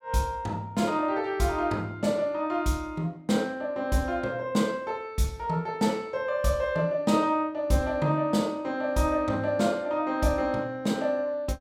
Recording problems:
none

